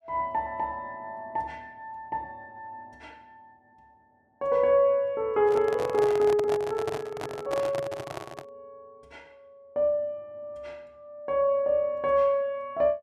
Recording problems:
handling noise; from 5.5 to 8.5 s; peak -3 dB vs average level

